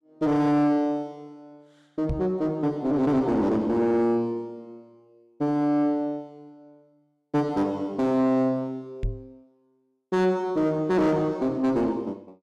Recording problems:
distorted audio; soft clipping, signal-to-distortion ratio 9 dB
knock on the microphone; at 2 s and at 9 s; peak -1 dB vs average level

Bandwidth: 13 kHz